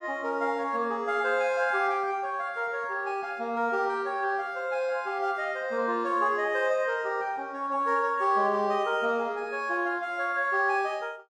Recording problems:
none

